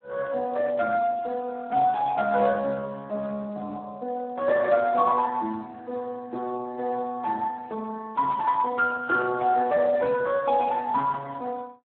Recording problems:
phone line; 220 Hz to 2.8 kHz, Speex

